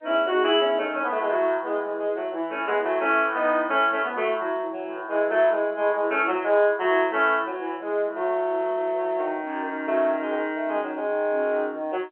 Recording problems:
telephone audio; 240 Hz to 3.3 kHz, G.711

